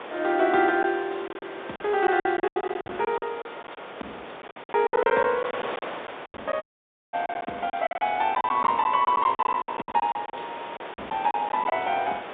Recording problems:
phone line; 280 Hz to 3.7 kHz, G.711
wind on the microphone; below 1.9 kHz, SNR 13 dB
packet loss; 15% of the sound replaced, filled with silence
audio cutting out; at 6.5 s for 0.5 s

